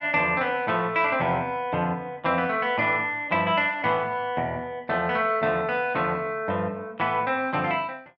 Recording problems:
none

